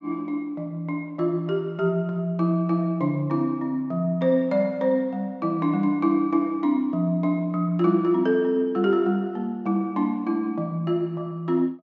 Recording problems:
treble cut off; nothing above 8 kHz

